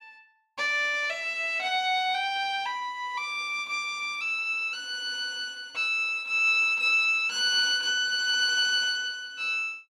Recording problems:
none

